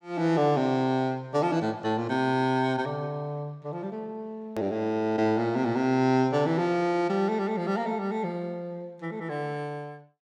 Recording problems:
hard cut with a click; at 4.5 s

